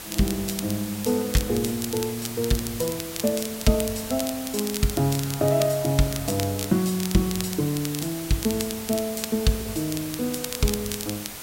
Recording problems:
hiss; slope -1 dB per octave, SNR 9 dB
crackle; vinyl, SNR 9 dB

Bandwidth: 16 kHz